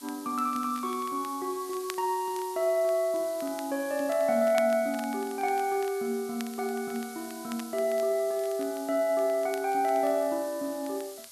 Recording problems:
background hiss; SNR 16 dB
crackle; vinyl, SNR 21 dB

